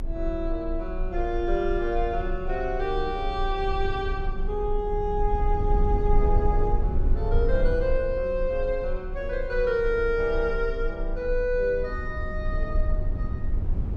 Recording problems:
rumble; below 54 Hz, strongest tone 28 Hz, SNR 3 dB

